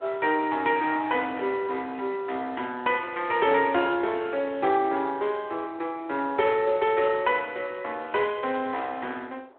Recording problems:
phone line; 240 Hz to 3.5 kHz, Speex
wind on the microphone; below 870 Hz, SNR 23 dB

